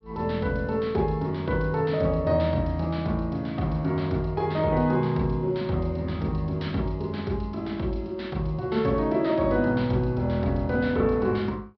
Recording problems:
treble cut off; nothing above 5.5 kHz

